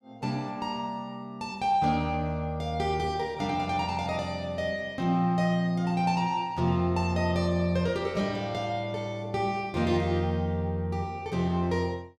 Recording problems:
none

